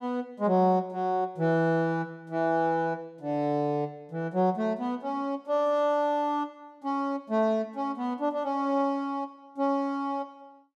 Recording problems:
none

